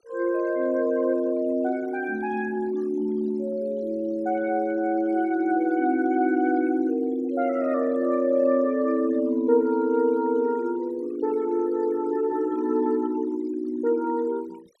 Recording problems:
noise reduction artefacts; signal-to-artefact ratio 26 dB

